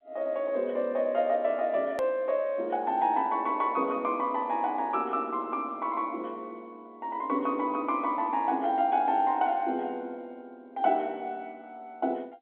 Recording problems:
phone line; 220 Hz to 3.7 kHz, G.711
click at an edit; at 2 s

